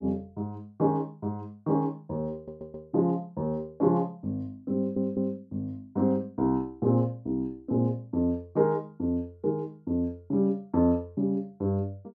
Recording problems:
audio stuttering; at 2.5 s and at 5 s

